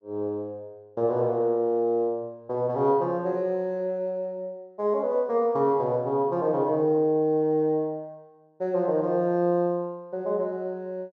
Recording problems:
none

